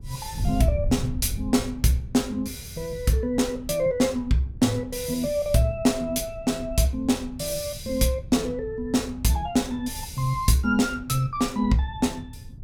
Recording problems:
wind on the microphone; below 120 Hz, SNR 12 dB

